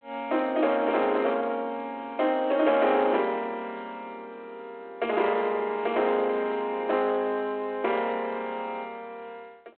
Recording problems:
telephone audio; 280 Hz to 3.4 kHz, G.726
distortion; soft clipping, signal-to-distortion ratio 13 dB

